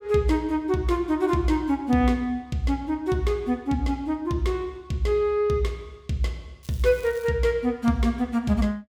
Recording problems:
crackling; at 6.5 s; loose cable, SNR 24 dB

